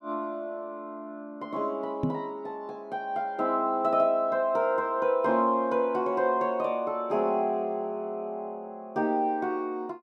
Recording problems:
microphone thump; at 2 s; peak +3 dB vs average level

